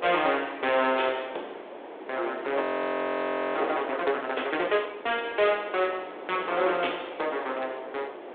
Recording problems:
phone line; 320 Hz to 3.6 kHz, G.726
wind noise; below 900 Hz, SNR 11 dB
audio freezing; at 2.5 s for 1 s

